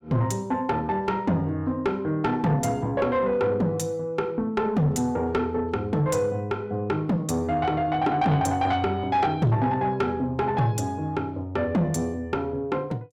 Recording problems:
distortion; soft clipping, signal-to-distortion ratio 11 dB

